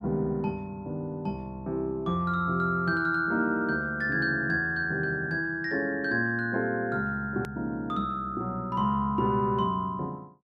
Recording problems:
hard cut with a click; at 7.5 s

